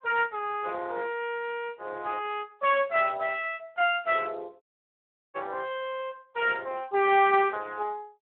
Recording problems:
telephone audio; 320 Hz to 3.5 kHz, Speex
dropout; at 4.5 s for 0.5 s

